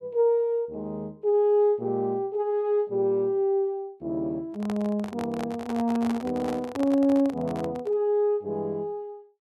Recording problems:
handling noise; from 4.5 to 8 s; peak -5 dB vs average level

